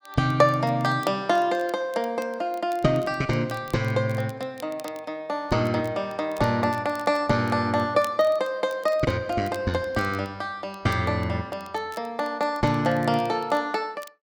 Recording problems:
crackling; vinyl, SNR 25 dB

